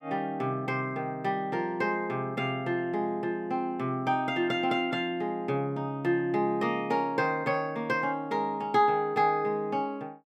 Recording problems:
none

